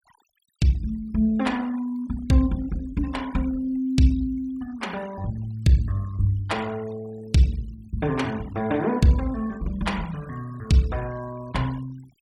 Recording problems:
noise reduction artefacts; signal-to-artefact ratio 22 dB

